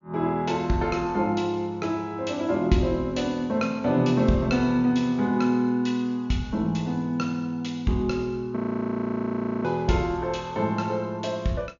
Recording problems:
low-pass filter; nothing above 7 kHz
audio freezing; at 8.5 s for 1 s

